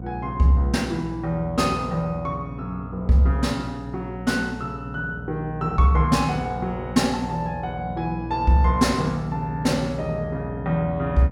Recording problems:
hum; 60 Hz, harmonics up to 780 Hz, SNR 11 dB

